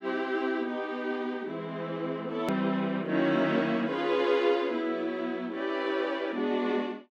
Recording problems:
edit click; at 2.5 s

